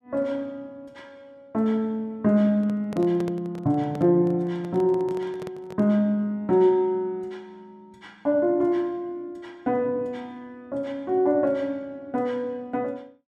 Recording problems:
handling noise; from 2.5 to 6 s; peak -7 dB vs average level

